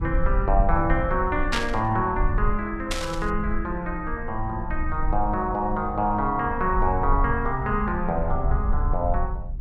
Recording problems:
low-frequency rumble; below 56 Hz, SNR 4 dB
burst of static; at 1.5 s and at 3 s; peak +4 dB vs average level

